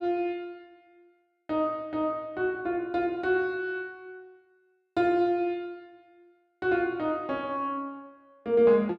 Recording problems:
none

